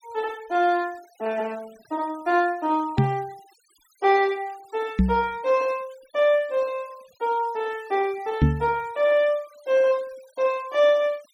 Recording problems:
noise reduction artefacts; signal-to-artefact ratio 26 dB
microphone thump; at 3 s, at 5 s and at 8.5 s; peak +9 dB vs average level

